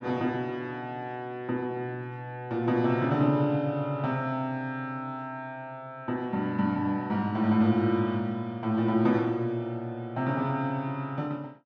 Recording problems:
none

